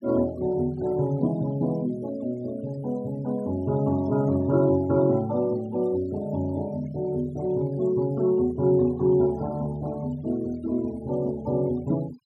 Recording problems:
noise reduction artefacts; signal-to-artefact ratio 23 dB

